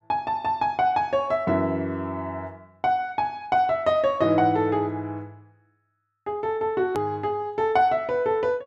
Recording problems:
edit click; at 7 s

